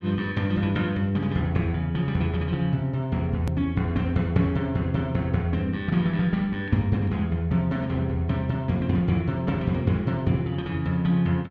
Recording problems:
edit click; at 3.5 s

